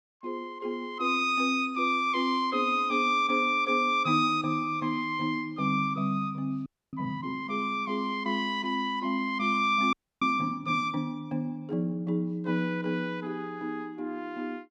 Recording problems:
frozen audio; at 6.5 s and at 10 s

